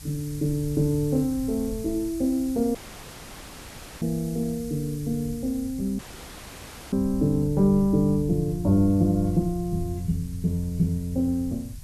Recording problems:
background hiss; slope +1 dB per octave, SNR 21 dB
rumble; below 110 Hz, SNR 13 dB
dropout; at 3 s for 1.5 s and at 6 s for 1 s

